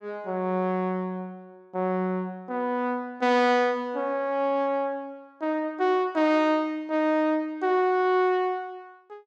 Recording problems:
none

